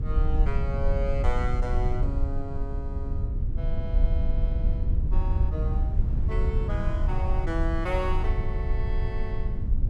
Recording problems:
low-frequency rumble; below 70 Hz, SNR -6 dB
wind on the microphone; below 78 Hz, SNR -1 dB

